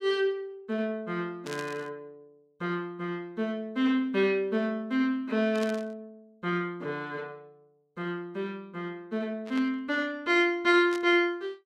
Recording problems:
static burst; 4 times, first at 1.5 s; peak -7 dB vs average level

